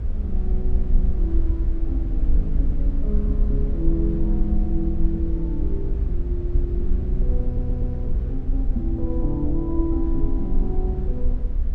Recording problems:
low-frequency rumble; below 60 Hz, strongest tone 20 Hz, SNR -5 dB
audio stuttering; at 7.5 s

